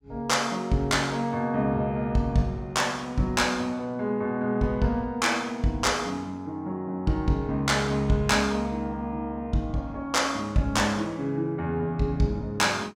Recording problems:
none

